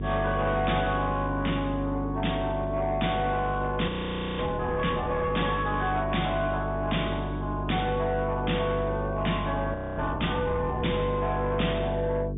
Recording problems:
low-pass filter; nothing above 3.7 kHz
lossy compression; MP3, log-spectral distance 2 dB
distortion; soft clipping, signal-to-distortion ratio 11 dB
hum; 50 Hz, harmonics up to 450 Hz, SNR 5 dB
frozen audio; at 4 s for 0.5 s and at 9.5 s

